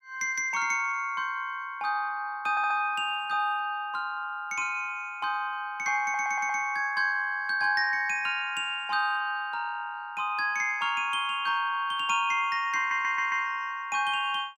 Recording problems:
audio stuttering; at 2.5 s, at 6 s and at 13 s

